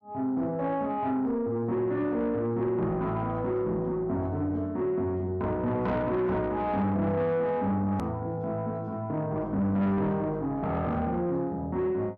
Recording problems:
distorted audio; soft clipping, signal-to-distortion ratio 11 dB
click at an edit; at 8 s

